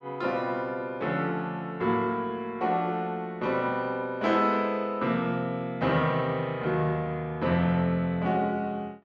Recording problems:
none

